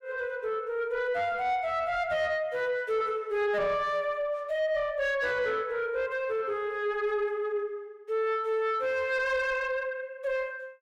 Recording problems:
distortion; soft clipping, signal-to-distortion ratio 11 dB

